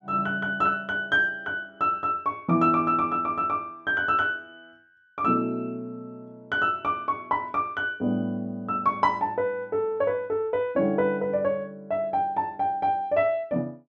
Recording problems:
none

